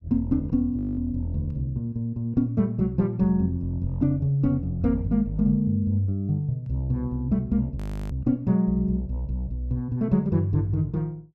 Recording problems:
frozen audio; at 1 s and at 8 s

